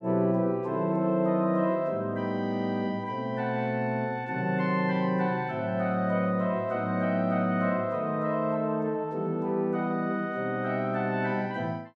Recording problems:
none

